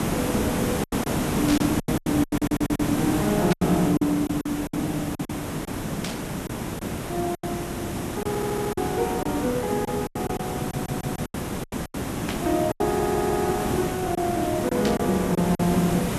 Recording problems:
background hiss; slope -6 dB per octave, SNR 2 dB
lost packets; 11% of the sound replaced, filled with silence
static burst; 5 times, first at 1.5 s; peak -1 dB vs average level
stutter; 4 times, first at 2.5 s

